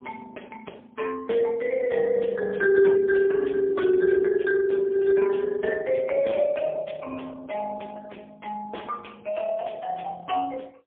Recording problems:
phone line; 280 Hz to 3.4 kHz, AMR-NB, then MP3

